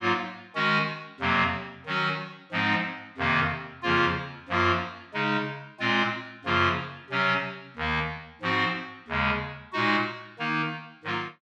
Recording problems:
none

